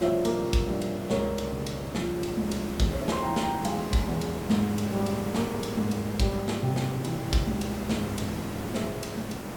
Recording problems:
background hiss; slope -7 dB per octave, SNR 7 dB

